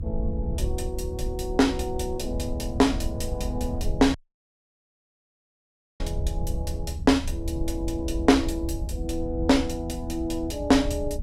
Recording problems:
low-frequency rumble; below 78 Hz, SNR 6 dB
audio cutting out; at 4 s for 2 s

